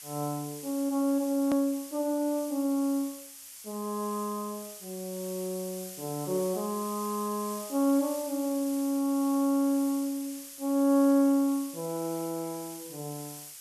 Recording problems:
hiss; slope +4 dB per octave, SNR 13 dB
edit click; at 1.5 s

